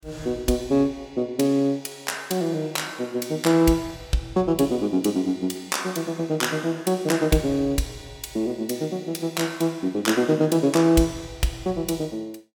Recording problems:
none

